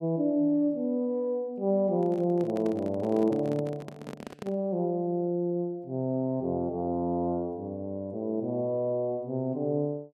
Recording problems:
handling noise; from 2 to 4.5 s; peak -6 dB vs average level

